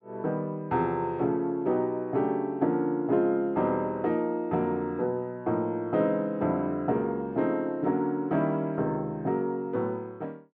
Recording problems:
none

